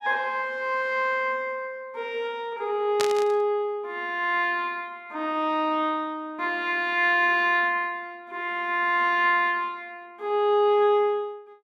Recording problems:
burst of static; at 3 s; peak +1 dB vs average level

